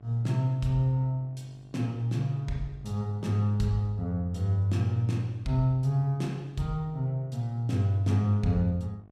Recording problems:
hum; 50 Hz, harmonics up to 1.5 kHz, SNR 28 dB

